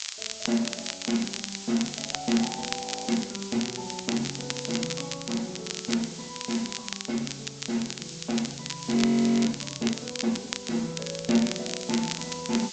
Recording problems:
low-pass filter; nothing above 7.3 kHz
codec artefacts; Opus, log-spectral distance 2 dB
background hiss; slope +5 dB per octave, SNR 10 dB
crackling; vinyl, SNR 5 dB
frozen audio; at 3 s and at 9 s

